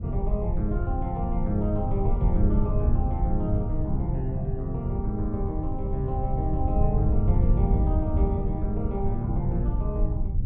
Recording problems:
rumble; below 96 Hz, SNR -2 dB

